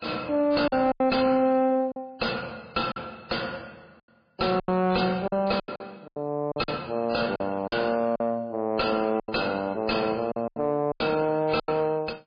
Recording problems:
lossy compression; MP3, log-spectral distance 4 dB, nothing above 4.6 kHz
distorted audio; soft clipping, signal-to-distortion ratio 9 dB
lost packets; 10% of the sound replaced, filled with silence

